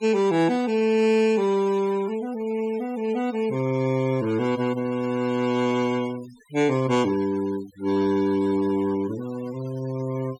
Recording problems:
noise reduction artefacts; signal-to-artefact ratio 20 dB

